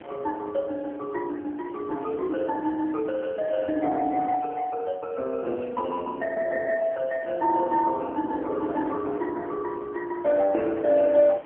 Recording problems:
phone line; 240 Hz to 2.8 kHz, AMR-NB
wind on the microphone; below 890 Hz, SNR 21 dB

